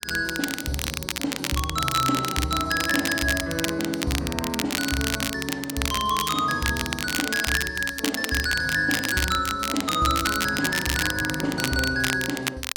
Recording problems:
crackle; vinyl, SNR 3 dB

